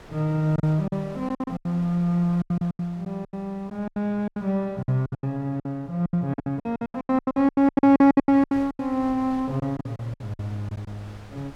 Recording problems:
wind on the microphone; below 1.4 kHz, SNR 24 dB
lost packets; 20% of the sound replaced, filled with silence

